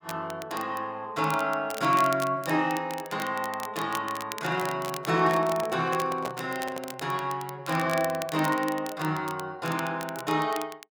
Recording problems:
crackling; vinyl, SNR 14 dB
handling noise; from 4.5 to 7 s; peak -3 dB vs average level

